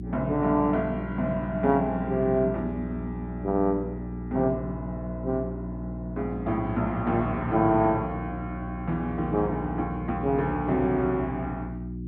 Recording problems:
hum; 60 Hz, harmonics up to 360 Hz, SNR 8 dB

